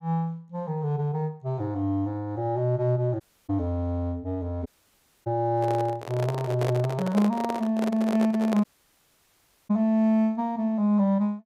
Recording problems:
dropout; at 3 s, at 4.5 s for 0.5 s and at 8.5 s for 1 s
handling noise; from 5.5 to 8.5 s; peak -1 dB vs average level

